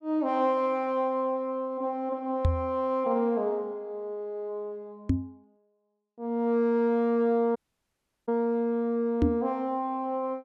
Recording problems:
microphone bump; at 2.5 s, at 5 s and at 9 s; peak +7 dB vs average level
audio cutting out; at 7.5 s for 0.5 s

